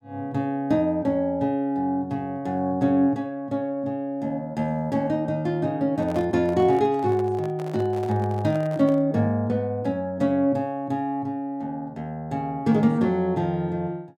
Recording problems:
microphone handling noise; from 6 to 9 s; peak -9 dB vs average level

